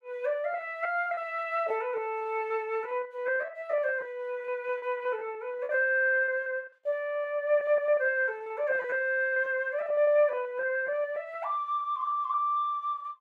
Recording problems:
lost packets; 16% of the sound replaced, filled with repeated pitch periods

